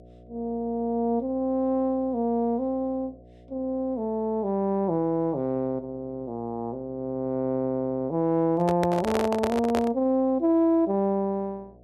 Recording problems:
hum; 60 Hz, harmonics up to 720 Hz, SNR 26 dB
microphone handling noise; from 8.5 to 10 s; peak +2 dB vs average level

